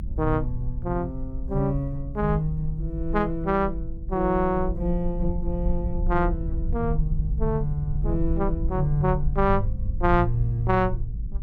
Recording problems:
rumble; below 60 Hz, SNR 5 dB

